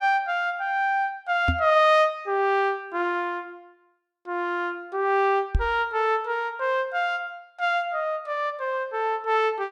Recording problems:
microphone bump; at 1.5 s and at 5.5 s; peak +4 dB vs average level

